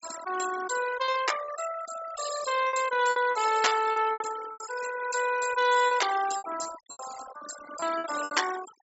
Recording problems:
treble missing; nothing above 8 kHz
noise reduction artefacts; signal-to-artefact ratio 9 dB
packet loss; 11% of the sound replaced, filled with repeated pitch periods

